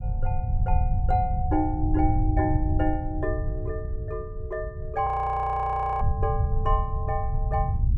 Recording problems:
low-frequency rumble; below 98 Hz, SNR 0 dB
frozen audio; at 5 s for 1 s

